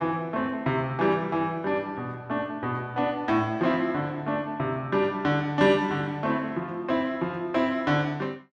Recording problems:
none

